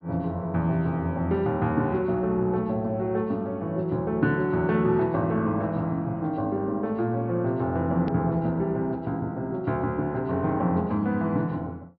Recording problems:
treble missing; nothing above 5.5 kHz
edit click; at 8 s

